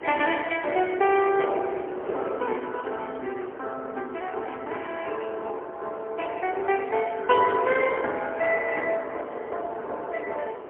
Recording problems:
telephone audio; 320 Hz to 3.2 kHz, AMR-NB, then MP3
wind noise; below 770 Hz, SNR 11 dB

